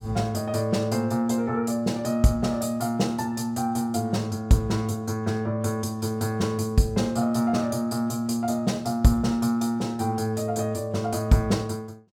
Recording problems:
none

